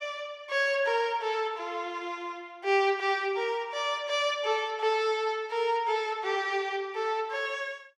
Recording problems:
none

